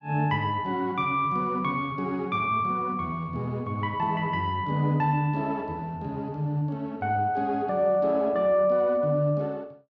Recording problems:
none

